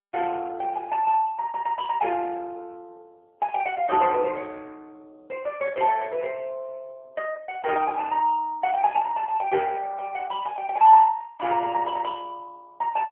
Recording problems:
phone line; 220 Hz to 3 kHz, AMR-NB

